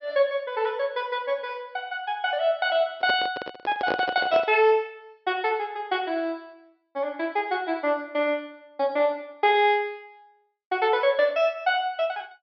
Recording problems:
treble cut off; nothing above 5.5 kHz
microphone handling noise; from 3 to 4.5 s; peak +1 dB vs average level

